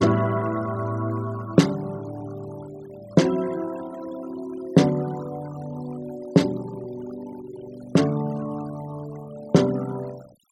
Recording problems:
denoising artefacts; signal-to-artefact ratio 20 dB

